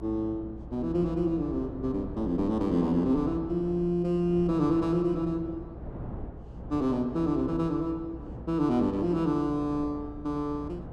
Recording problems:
electrical hum; 60 Hz, harmonics up to 300 Hz, SNR 18 dB
wind on the microphone; below 360 Hz, SNR 15 dB

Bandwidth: 12.5 kHz